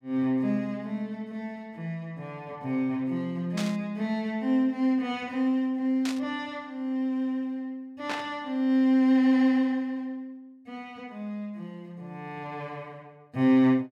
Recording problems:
burst of static; at 3.5 s, at 6 s and at 8 s; peak -3 dB vs average level

